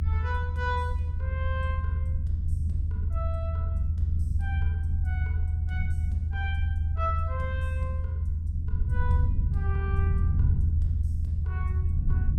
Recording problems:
rumble; below 82 Hz, strongest tone 80 Hz, SNR -10 dB

